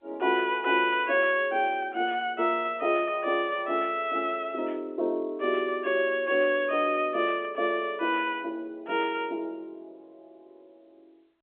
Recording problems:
phone line; 300 Hz to 3.5 kHz, G.711

